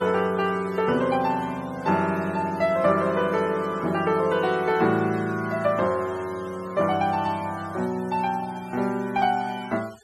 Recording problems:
denoising artefacts; signal-to-artefact ratio 21 dB

